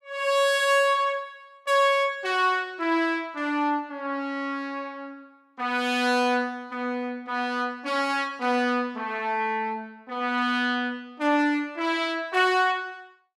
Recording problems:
none

